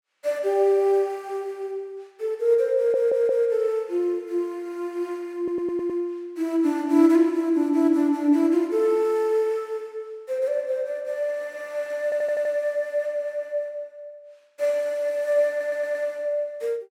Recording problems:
stutter; 4 times, first at 3 s

